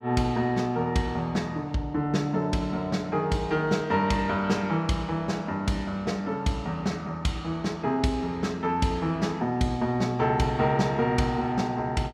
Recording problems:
none

